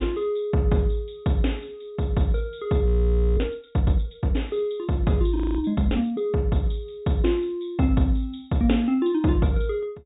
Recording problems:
treble cut off; nothing above 4 kHz
audio freezing; at 3 s for 0.5 s and at 5.5 s

